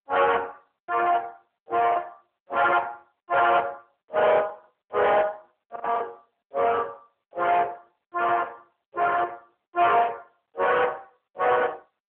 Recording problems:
phone line; 370 Hz to 3.5 kHz, AMR-NB
distortion; soft clipping, signal-to-distortion ratio 11 dB
lost packets; 4% of the sound replaced, filled with the last packet

